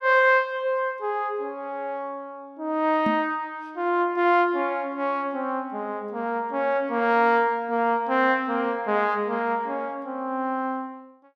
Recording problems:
microphone thump; at 3 s; peak 0 dB vs average level

